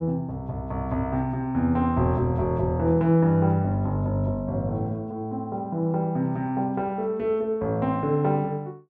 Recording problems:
none

